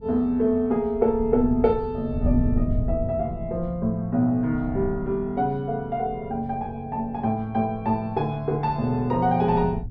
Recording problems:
wind noise; below 120 Hz, SNR 8 dB

